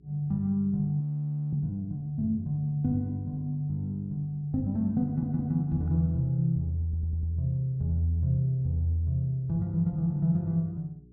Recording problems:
treble cut off; nothing above 5.5 kHz
mains hum; 60 Hz, harmonics up to 420 Hz, SNR 27 dB
audio freezing; at 1 s for 0.5 s
stutter; at 5 s and at 7 s

